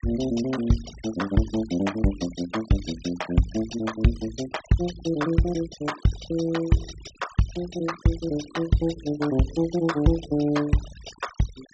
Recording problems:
treble missing; nothing above 8 kHz
denoising artefacts; signal-to-artefact ratio 16 dB

